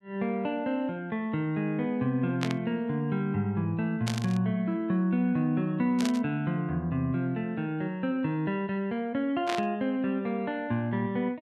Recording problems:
burst of static; 4 times, first at 2.5 s; peak +1 dB vs average level

